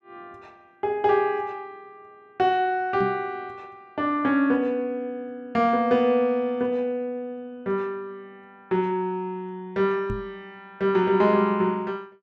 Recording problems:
microphone bump; at 3 s and at 10 s; peak -3 dB vs average level

